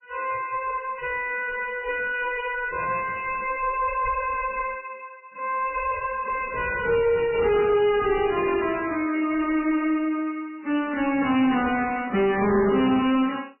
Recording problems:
lossy codec; AAC, then MP3, log-spectral distance 4 dB, nothing above 2.4 kHz
distortion; soft clipping, signal-to-distortion ratio 7 dB

